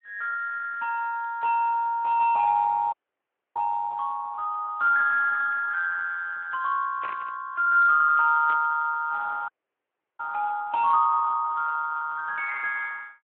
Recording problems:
telephone audio; 130 Hz to 3 kHz, Speex
audio freezing; at 3 s for 0.5 s and at 9.5 s for 0.5 s
burst of static; at 7 s and at 8.5 s; peak -10 dB vs average level

